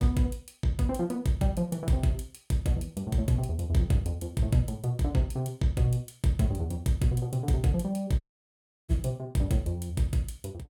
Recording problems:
dropout; at 8 s for 0.5 s

